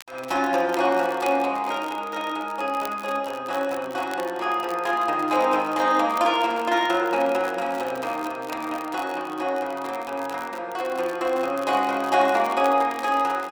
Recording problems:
crackling; vinyl, SNR 21 dB

